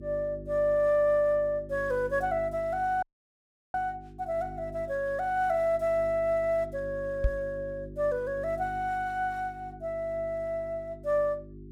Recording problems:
hum; 50 Hz, harmonics up to 400 Hz, SNR 16 dB
audio cutting out; at 3 s for 0.5 s
knock on the microphone; at 7 s; peak +5 dB vs average level

